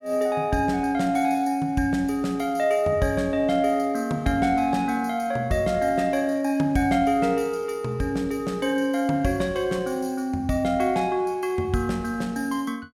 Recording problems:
none

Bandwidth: 17 kHz